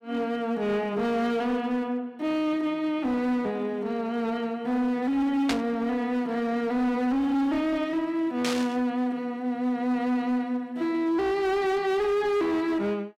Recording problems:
distorted audio; hard clipping, signal-to-distortion ratio 11 dB
burst of static; at 5.5 s and at 8.5 s; peak +2 dB vs average level

